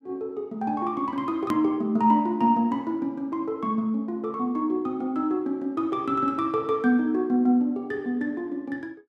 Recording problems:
hard cut with a click; at 1.5 s

